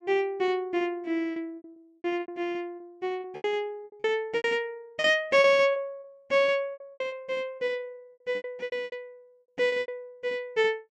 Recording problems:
packet loss; 14% of the sound replaced, filled with repeated pitch periods

